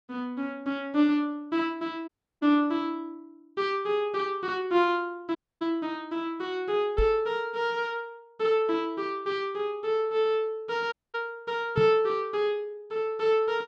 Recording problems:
audio cutting out; at 2 s, at 5.5 s and at 11 s
microphone thump; at 7 s and at 12 s; peak +3 dB vs average level

